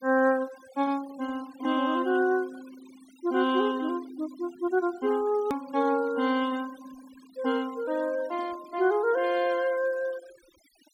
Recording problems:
noise reduction artefacts; signal-to-artefact ratio 22 dB
hard cut with a click; at 5.5 s

